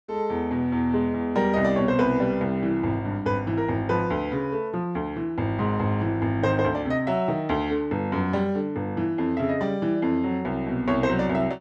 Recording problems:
none

